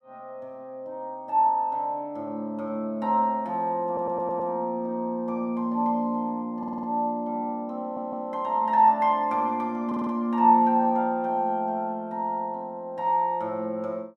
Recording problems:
audio stuttering; 4 times, first at 4 s

